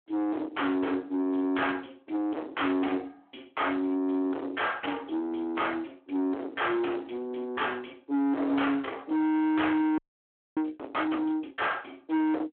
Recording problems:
telephone audio; 220 Hz to 3.4 kHz, Speex
distorted audio; soft clipping, signal-to-distortion ratio 6 dB
audio freezing; at 10 s for 0.5 s

